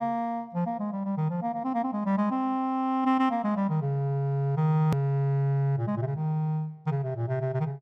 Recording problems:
hard cut with a click; at 5 s

